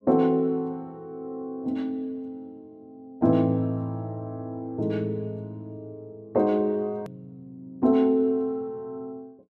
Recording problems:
hard cut with a click; at 7 s

